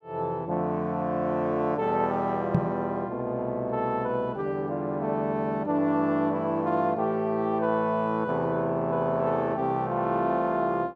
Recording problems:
knock on the microphone; at 2.5 s; peak +6 dB vs average level

